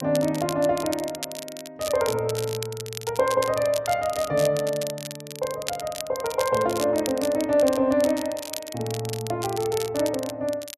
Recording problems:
crackling; vinyl, SNR 11 dB

